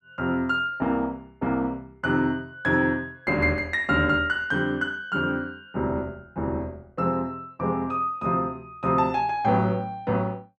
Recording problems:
none

